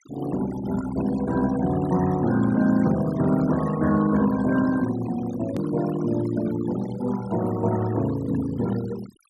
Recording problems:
noise reduction artefacts; signal-to-artefact ratio 15 dB
click at an edit; at 5.5 s

